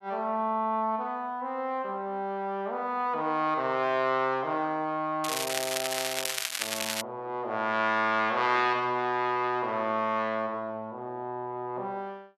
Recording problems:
crackle; from 5 to 7 s; loose cable, SNR 1 dB

